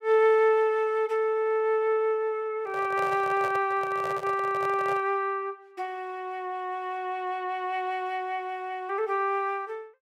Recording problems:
handling noise; from 2.5 to 5 s; peak -6 dB vs average level

